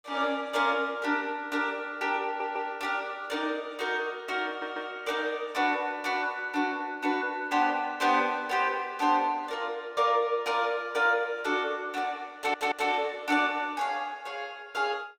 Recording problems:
stutter; at 2.5 s, at 4.5 s and at 12 s

